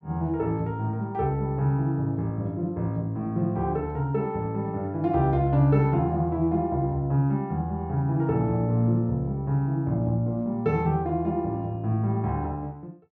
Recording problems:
none

